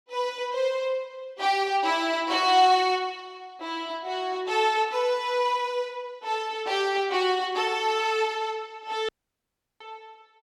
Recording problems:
dropout; at 9 s for 0.5 s

